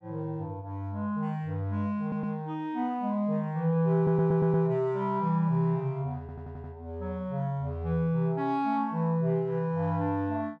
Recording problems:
audio stuttering; at 2 s, at 4 s and at 6 s

